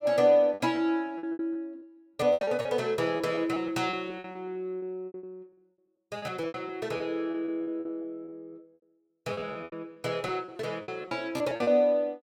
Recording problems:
lost packets; 16% of the sound replaced, filled with repeated pitch periods

